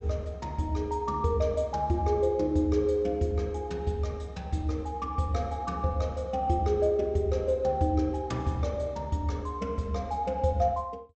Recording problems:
low-pass filter; nothing above 8 kHz

